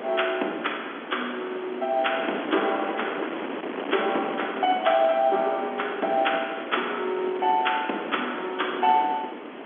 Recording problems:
phone line; 240 Hz to 3.4 kHz, G.711
background hiss; SNR 29 dB
wind on the microphone; below 1.3 kHz, SNR 9 dB

